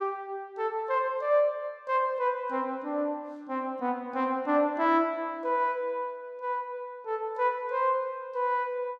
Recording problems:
none

